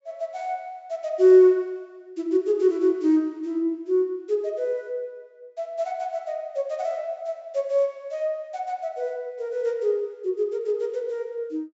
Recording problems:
treble missing; nothing above 8 kHz

